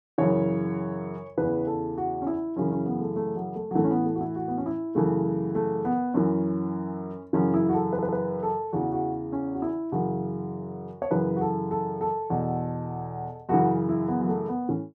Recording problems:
stutter; at 8 s

